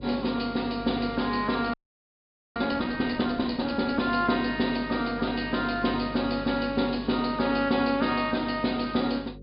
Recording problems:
treble missing; nothing above 5 kHz
electrical hum; 50 Hz, harmonics up to 550 Hz, SNR 16 dB
frozen audio; at 1.5 s for 1 s

